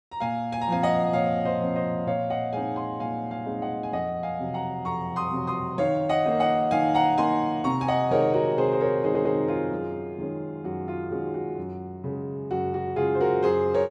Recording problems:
stutter; at 9 s

